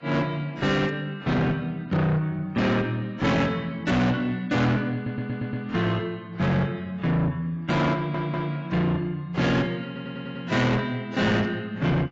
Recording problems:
lossy compression; AAC, log-spectral distance 2 dB, nothing above 7.3 kHz
distortion; soft clipping, signal-to-distortion ratio 6 dB
stutter; at 5 s, at 8 s and at 10 s

